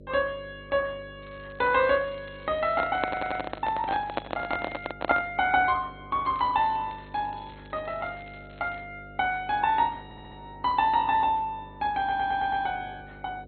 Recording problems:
lossy compression; MP2, log-spectral distance 4 dB, nothing above 3.8 kHz
electrical hum; 50 Hz, harmonics up to 600 Hz, SNR 20 dB
crackle; from 1 to 5 s and from 6.5 to 9 s; loose cable, SNR 28 dB
handling noise; from 2.5 to 5.5 s; peak +4 dB vs average level
audio stuttering; at 3 s, at 10 s and at 12 s

